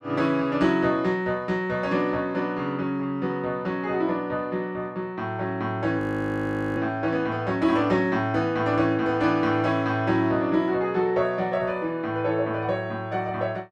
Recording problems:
frozen audio; at 6 s for 1 s

